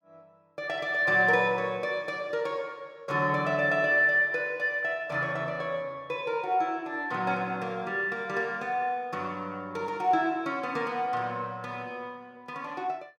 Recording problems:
none

